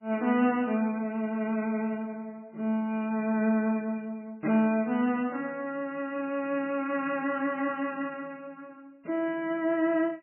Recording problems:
lossy compression; MP3, log-spectral distance 2 dB, nothing above 2.5 kHz

